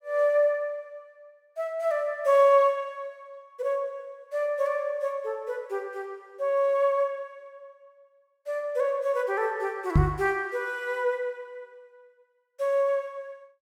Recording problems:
microphone bump; at 10 s; peak +9 dB vs average level

